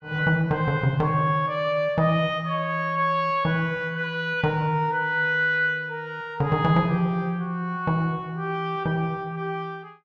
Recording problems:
none

